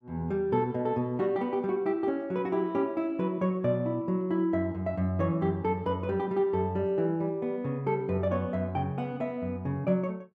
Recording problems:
none

